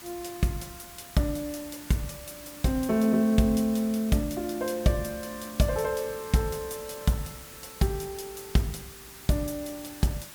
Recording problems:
hiss; SNR 15 dB

